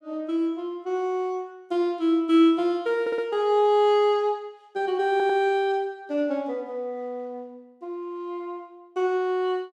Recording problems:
stutter; at 3 s and at 5 s

